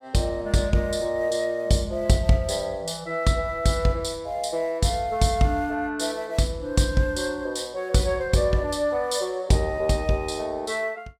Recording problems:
none

